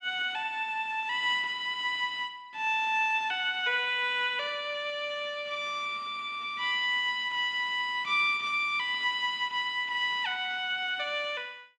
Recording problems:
none

